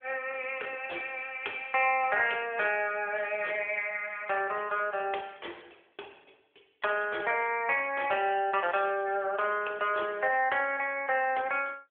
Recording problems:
phone line; 340 Hz to 3.4 kHz, AMR-NB

